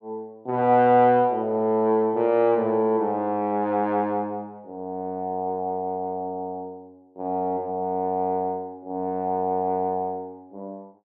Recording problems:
none

